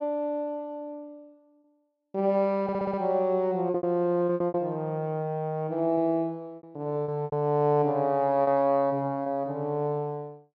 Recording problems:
lost packets; 6% of the sound replaced, filled with repeated pitch periods
stutter; at 2.5 s

